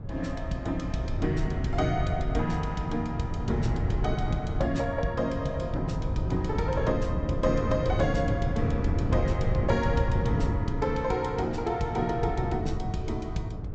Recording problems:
treble missing; nothing above 8 kHz
wind on the microphone; below 150 Hz, SNR 1 dB

